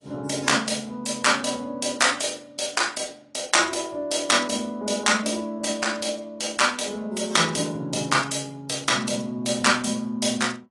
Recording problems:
codec artefacts; AAC, log-spectral distance 6 dB, nothing above 10.4 kHz

